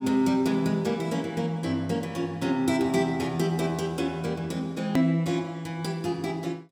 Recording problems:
hard cut with a click; at 5 s

